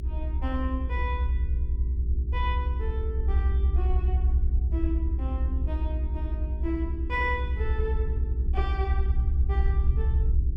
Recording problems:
electrical hum; 50 Hz, harmonics up to 400 Hz, SNR 10 dB
rumble; below 70 Hz, strongest tone 60 Hz, SNR -8 dB

